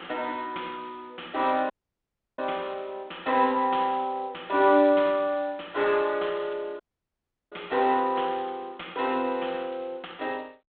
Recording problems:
phone line; 220 Hz to 3.7 kHz, G.726
audio cutting out; at 1.5 s for 0.5 s and at 7 s for 0.5 s

